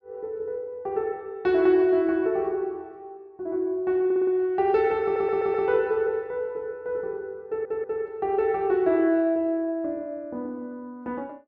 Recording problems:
treble missing; nothing above 8 kHz
stutter; at 4 s, at 5 s and at 7.5 s

